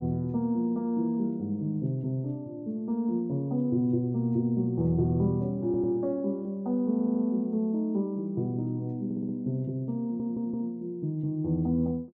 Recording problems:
audio stuttering; 4 times, first at 5.5 s

